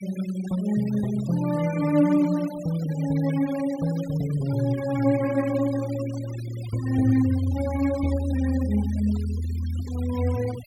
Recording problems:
noise reduction artefacts; signal-to-artefact ratio 18 dB

